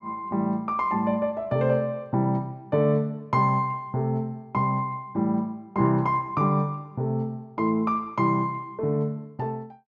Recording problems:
none

